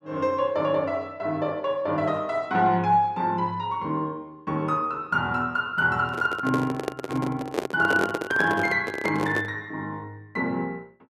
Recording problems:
microphone handling noise; from 6 to 9.5 s; peak +4 dB vs average level

